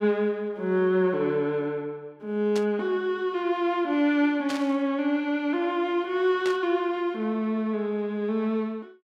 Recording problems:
burst of static; at 2.5 s, at 4.5 s and at 6.5 s; peak -5 dB vs average level

